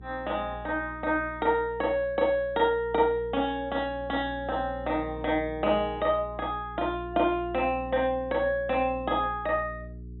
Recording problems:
treble cut off; nothing above 3.8 kHz
hum; 60 Hz, harmonics up to 420 Hz, SNR 16 dB

